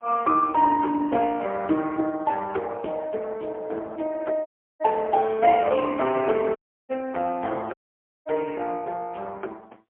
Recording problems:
phone line; 280 Hz to 3.2 kHz, AMR-NB, then MP3
audio cutting out; at 4.5 s, at 6.5 s and at 7.5 s for 0.5 s

